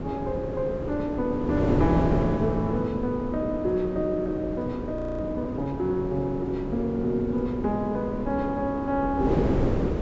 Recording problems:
treble missing; nothing above 8 kHz
wind noise; below 440 Hz, SNR 3 dB
audio freezing; at 5 s

